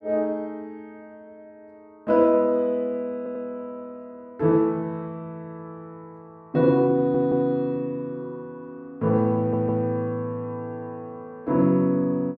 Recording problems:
audio stuttering; at 3 s, at 7 s and at 9.5 s

